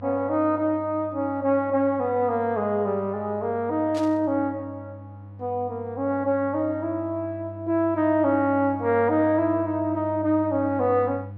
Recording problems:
hum; 50 Hz, harmonics up to 700 Hz, SNR 16 dB
static burst; at 4 s; peak -11 dB vs average level

